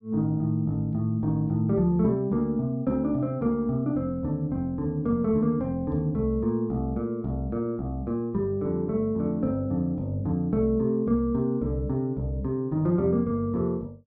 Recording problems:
treble cut off; nothing above 5.5 kHz

